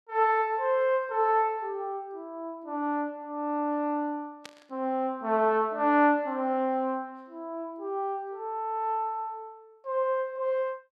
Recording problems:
burst of static; at 4.5 s; peak -10 dB vs average level

